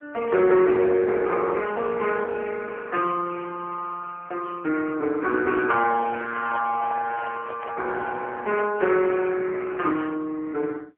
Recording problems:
telephone audio; 260 Hz to 3.2 kHz, AMR-NB
handling noise; from 6 to 9 s; peak -7 dB vs average level

